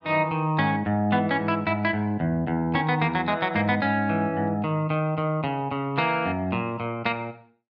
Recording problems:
none

